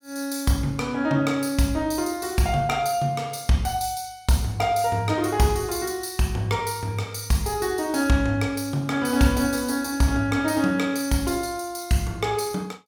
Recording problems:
none

